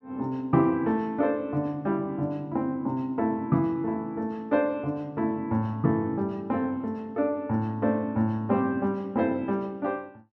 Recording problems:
none

